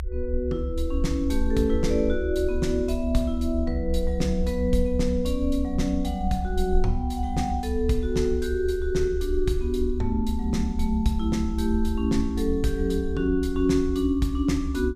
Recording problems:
rumble; below 68 Hz, SNR 5 dB

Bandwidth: 15 kHz